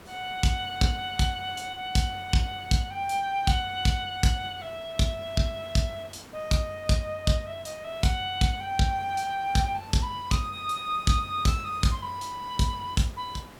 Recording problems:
background hiss; slope -5 dB per octave, SNR 20 dB

